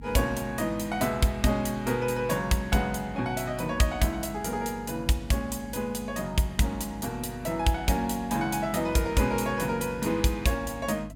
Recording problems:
hum; 50 Hz, harmonics up to 300 Hz, SNR 17 dB

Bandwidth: 17 kHz